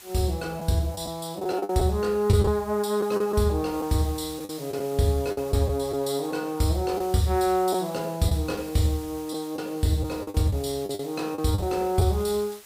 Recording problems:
background hiss; slope +1 dB per octave, SNR 19 dB
packet loss; 6% of the sound replaced, filled with the last packet

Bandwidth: 15.5 kHz